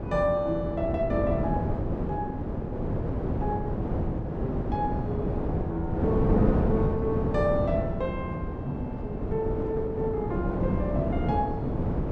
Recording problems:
wind noise; below 370 Hz, SNR -1 dB

